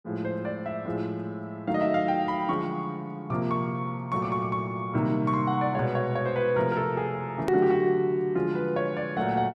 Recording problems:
hard cut with a click; at 7.5 s

